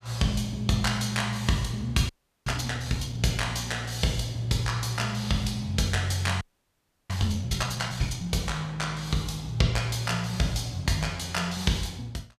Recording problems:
frozen audio; at 2 s and at 6.5 s for 0.5 s

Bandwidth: 14.5 kHz